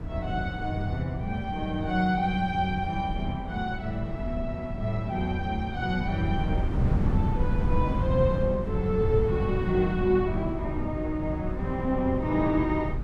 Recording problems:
wind noise; below 160 Hz, SNR 3 dB

